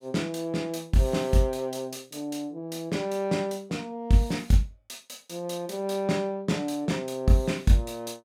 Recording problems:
none

